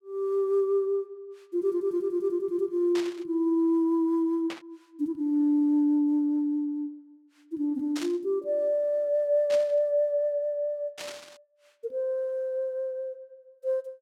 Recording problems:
burst of static; 5 times, first at 3 s; peak -7 dB vs average level

